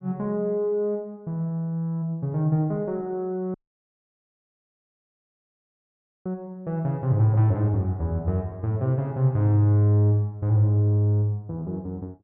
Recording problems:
dropout; at 3.5 s for 2.5 s

